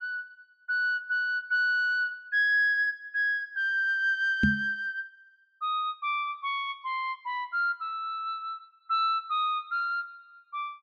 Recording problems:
microphone bump; at 4.5 s; peak +7 dB vs average level

